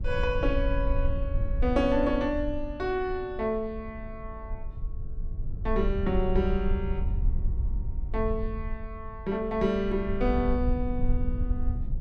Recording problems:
low-frequency rumble; below 64 Hz, SNR 3 dB

